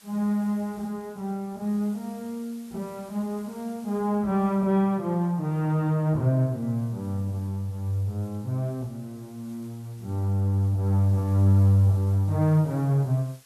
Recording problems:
hiss; slope 0 dB per octave, SNR 28 dB

